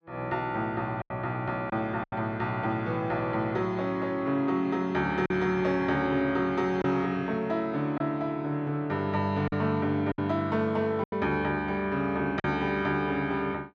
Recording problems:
packet loss; 4% of the sound replaced, filled with silence

